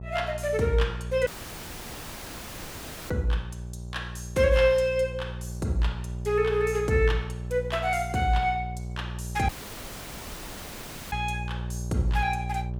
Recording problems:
hum; 60 Hz, harmonics up to 600 Hz, SNR 9 dB
audio cutting out; at 1.5 s for 2 s and at 9.5 s for 1.5 s

